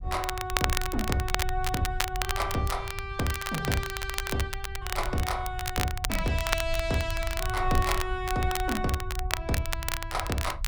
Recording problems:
rumble; below 72 Hz, SNR 6 dB
crackling; vinyl, SNR 3 dB

